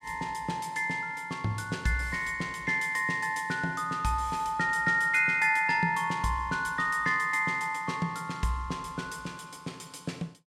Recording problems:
none

